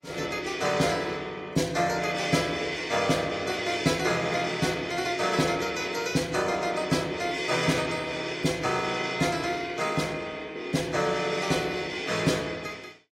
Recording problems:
lossy codec; AAC, log-spectral distance 4 dB, nothing above 15.5 kHz

